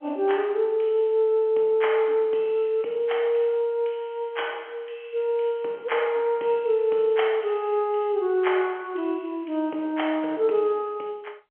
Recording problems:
phone line; 260 Hz to 3.2 kHz, G.711

